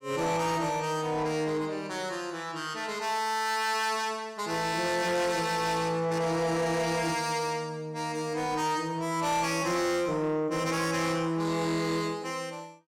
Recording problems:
distorted audio; soft clipping, signal-to-distortion ratio 11 dB

